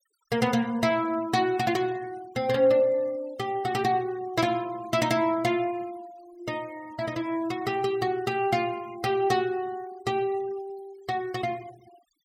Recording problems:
denoising artefacts; signal-to-artefact ratio 24 dB

